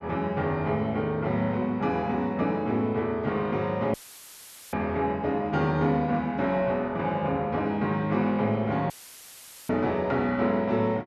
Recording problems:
audio cutting out; at 4 s for 1 s and at 9 s for 1 s; filled with static

